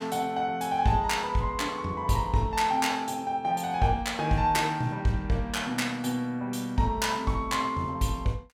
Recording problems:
none

